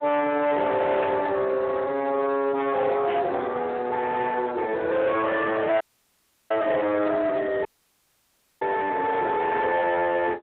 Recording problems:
phone line; 300 Hz to 3.9 kHz, Speex
distorted audio; hard clipping, signal-to-distortion ratio 8 dB
static burst; at 1 s and at 3 s; peak -7 dB vs average level
audio cutting out; at 6 s for 0.5 s and at 7.5 s for 1 s

